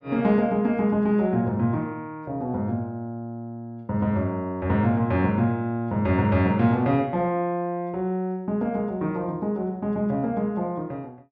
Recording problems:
none

